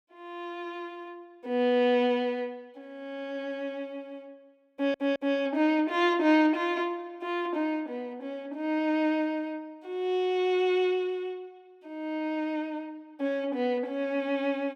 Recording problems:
stutter; at 4.5 s

